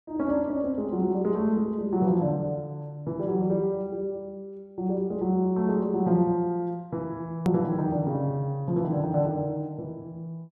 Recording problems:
click at an edit; at 7.5 s

